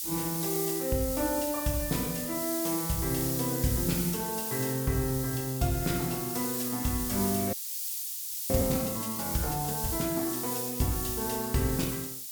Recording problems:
hiss; slope +9 dB per octave, SNR 1 dB
audio freezing; at 7.5 s for 1 s

